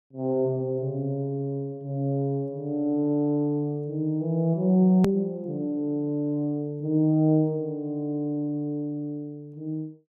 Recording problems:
hard cut with a click; at 5 s

